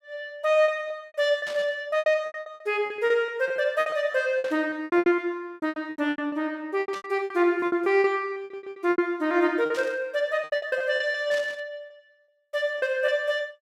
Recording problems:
lost packets; 18% of the sound replaced, filled with repeated pitch periods
burst of static; 5 times, first at 1.5 s; peak -10 dB vs average level
audio stuttering; at 8.5 s

